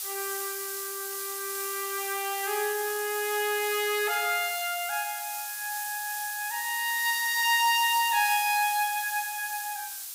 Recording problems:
hiss; slope +5 dB per octave, SNR 5 dB

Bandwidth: 15.5 kHz